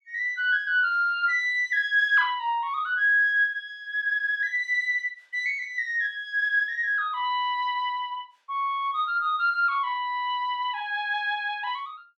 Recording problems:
none

